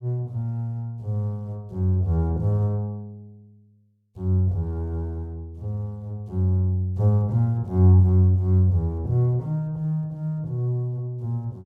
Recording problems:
none

